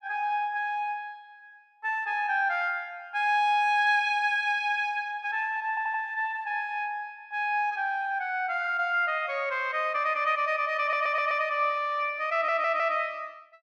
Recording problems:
audio stuttering; at 5.5 s, at 11 s and at 12 s

